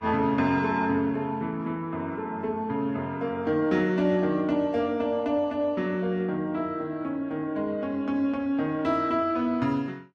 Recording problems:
lossy compression; Vorbis, log-spectral distance 2 dB

